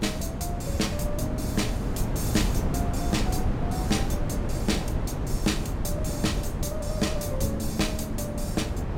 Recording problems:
wind on the microphone; below 240 Hz, SNR -1 dB

